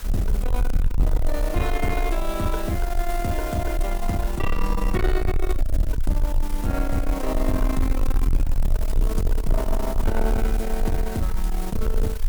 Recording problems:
distortion; soft clipping, signal-to-distortion ratio 7 dB
hiss; slope -1 dB per octave, SNR 12 dB
rumble; below 42 Hz, SNR 0 dB

